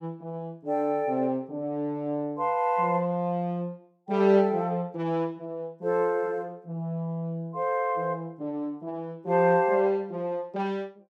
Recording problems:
none

